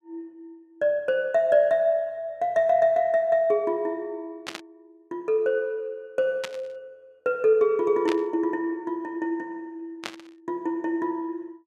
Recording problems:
burst of static; 4 times, first at 4.5 s; peak -3 dB vs average level

